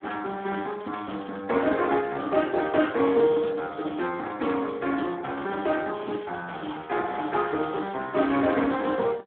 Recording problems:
telephone audio; 170 Hz to 3.6 kHz, Speex

